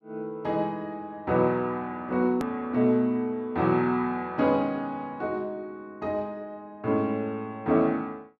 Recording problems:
hard cut with a click; at 2.5 s

